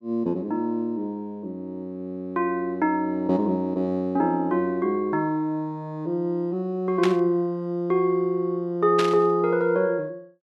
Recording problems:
static burst; at 7 s and at 9 s; peak 0 dB vs average level

